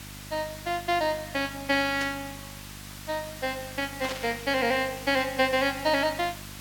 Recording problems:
hum; 50 Hz, harmonics up to 650 Hz, SNR 18 dB
background hiss; slope 0 dB per octave, SNR 14 dB
static burst; at 2 s and at 4 s; peak -3 dB vs average level

